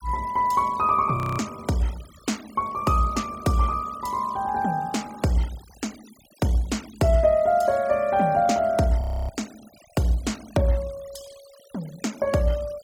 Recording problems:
denoising artefacts; signal-to-artefact ratio 22 dB
frozen audio; at 1 s and at 9 s

